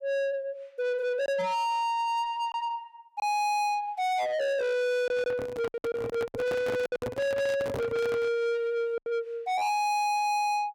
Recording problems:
distortion; soft clipping, signal-to-distortion ratio 7 dB
lost packets; 5% of the sound replaced, filled with silence
microphone handling noise; from 5 to 8.5 s; peak 0 dB vs average level

